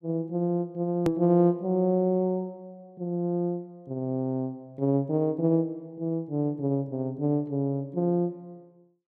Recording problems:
hard cut with a click; at 1 s

